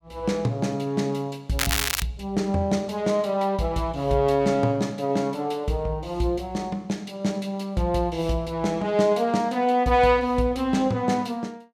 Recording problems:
crackling; at 1.5 s; loose cable, SNR 1 dB

